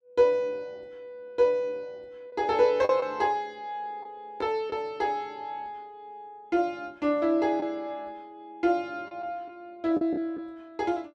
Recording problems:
lost packets; 2% of the sound replaced, filled with the last packet

